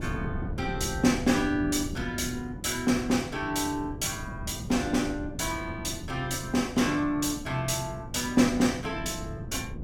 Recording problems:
wind noise; below 220 Hz, SNR 10 dB

